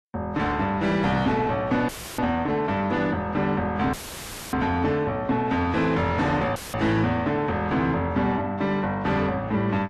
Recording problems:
lossy codec; AAC, log-spectral distance 2 dB, nothing above 10.7 kHz
distortion; soft clipping, signal-to-distortion ratio 9 dB
audio cutting out; at 2 s, at 4 s for 0.5 s and at 6.5 s; filled with static

